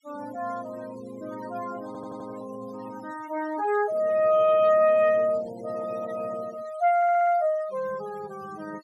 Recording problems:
noise reduction artefacts; signal-to-artefact ratio 21 dB
audio stuttering; at 2 s and at 7 s

